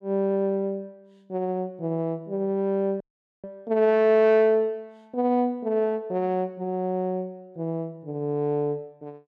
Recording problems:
audio cutting out; at 3 s

